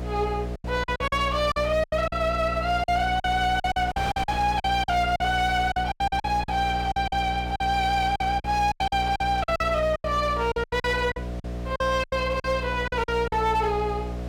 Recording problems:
distortion; hard clipping, uneven, signal-to-distortion ratio 11 dB
mains hum; 60 Hz, harmonics up to 720 Hz, SNR 8 dB
wind on the microphone; below 2.1 kHz, SNR 20 dB
lost packets; 14% of the sound replaced, filled with silence

